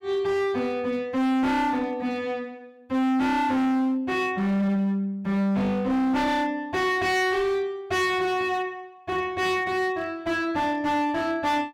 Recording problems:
distorted audio; hard clipping, signal-to-distortion ratio 6 dB

